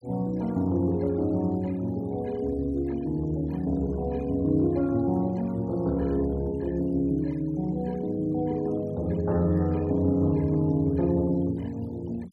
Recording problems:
denoising artefacts; signal-to-artefact ratio 26 dB

